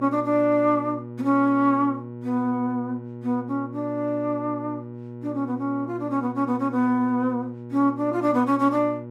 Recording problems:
hum; 60 Hz, harmonics up to 960 Hz, SNR 13 dB

